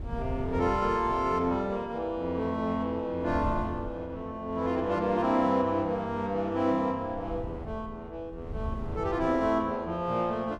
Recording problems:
wind on the microphone; below 130 Hz, SNR 13 dB

